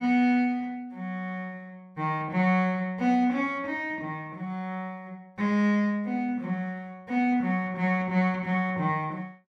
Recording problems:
none

